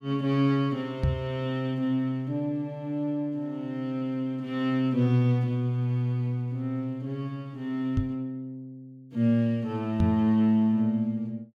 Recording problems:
knock on the microphone; at 1 s, at 8 s and at 10 s; peak +5 dB vs average level

